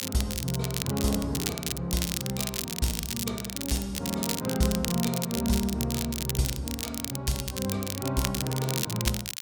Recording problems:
crackling; vinyl, SNR 3 dB

